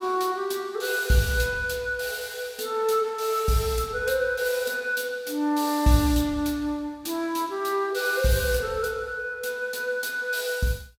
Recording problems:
none

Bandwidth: 16.5 kHz